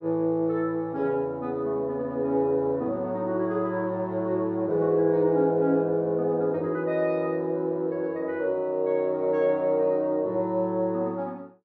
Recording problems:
none

